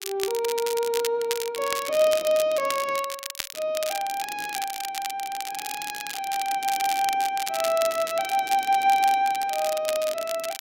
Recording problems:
crackling; vinyl, SNR 8 dB

